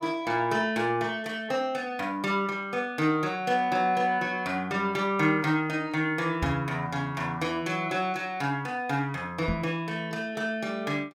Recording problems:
knock on the microphone; at 6.5 s and at 9.5 s; peak 0 dB vs average level

